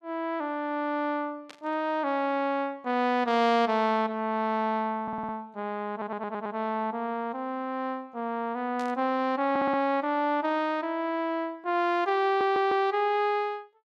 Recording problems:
static burst; at 1.5 s and at 9 s; peak -13 dB vs average level
stutter; 4 times, first at 5 s

